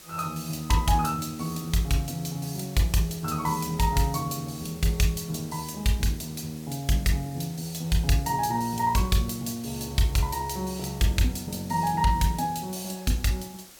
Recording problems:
background hiss; SNR 19 dB

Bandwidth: 17 kHz